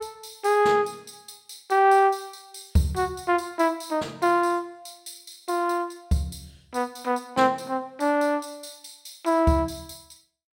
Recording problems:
none

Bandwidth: 16 kHz